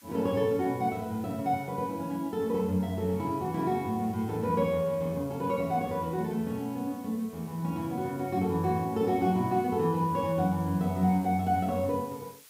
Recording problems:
background hiss; slope +2 dB per octave, SNR 24 dB

